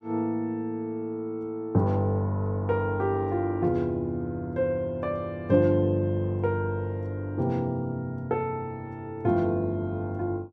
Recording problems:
none

